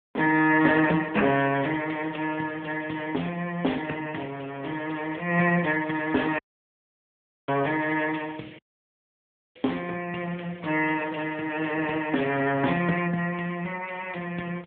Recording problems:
telephone audio; 220 Hz to 3.4 kHz, AMR-NB
audio cutting out; at 6.5 s for 1 s and at 8.5 s for 1 s

